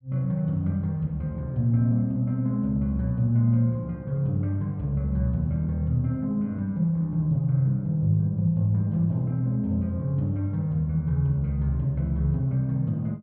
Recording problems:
none

